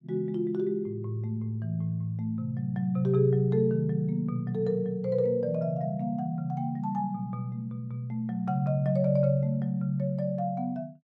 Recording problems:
none

